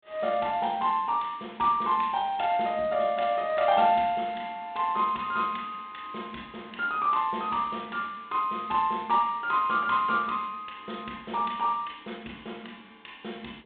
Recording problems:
phone line; 150 Hz to 3.7 kHz, G.726

